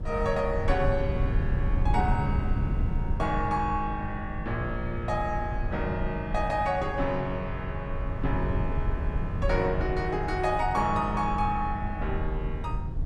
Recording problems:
wind on the microphone; below 110 Hz, SNR 2 dB

